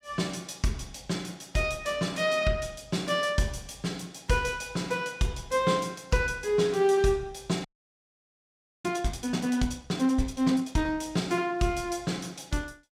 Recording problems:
audio freezing; at 7.5 s for 1 s

